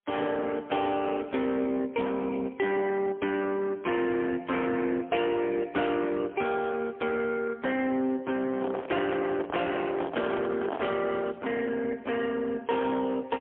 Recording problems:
telephone audio; 220 Hz to 3.4 kHz, AMR-NB, then MP3
distorted audio; soft clipping, signal-to-distortion ratio 13 dB
handling noise; from 8.5 to 11 s; peak 0 dB vs average level

